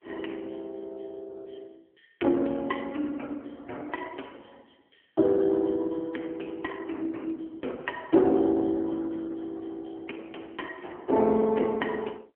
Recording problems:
telephone audio; 240 Hz to 3 kHz, AMR-NB

